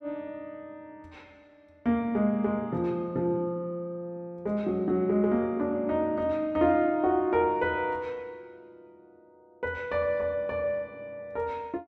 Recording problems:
none

